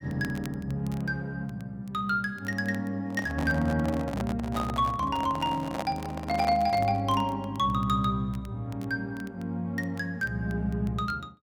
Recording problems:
crackling; vinyl, SNR 25 dB
handling noise; from 3 to 7 s; peak 0 dB vs average level

